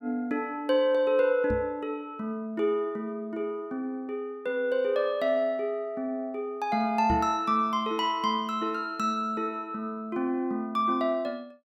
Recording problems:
microphone bump; at 1.5 s and at 7 s; peak 0 dB vs average level

